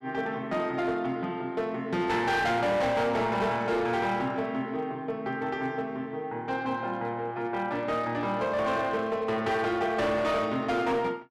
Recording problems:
distortion; hard clipping, uneven, signal-to-distortion ratio 11 dB

